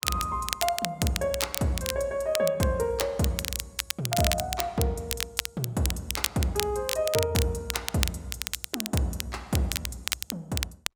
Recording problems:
crackle; vinyl, SNR 3 dB

